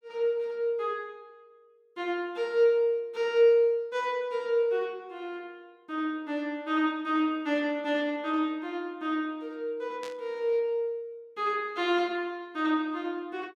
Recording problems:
static burst; at 10 s; peak -10 dB vs average level

